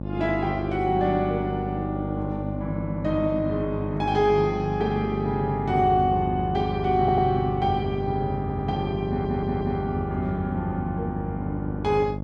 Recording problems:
hum; 50 Hz, harmonics up to 900 Hz, SNR 5 dB
audio stuttering; at 7 s, at 8.5 s and at 9 s

